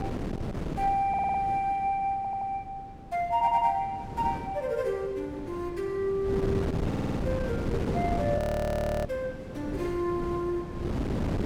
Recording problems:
wind noise; below 370 Hz, SNR 4 dB
stutter; 4 times, first at 1 s
frozen audio; at 8.5 s for 0.5 s

